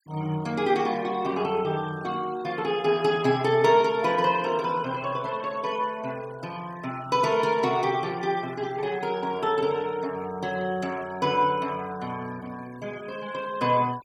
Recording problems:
denoising artefacts; signal-to-artefact ratio 22 dB

